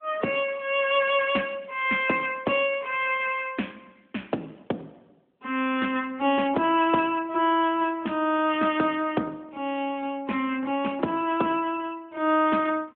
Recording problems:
telephone audio; 170 Hz to 3.4 kHz, AMR-NB

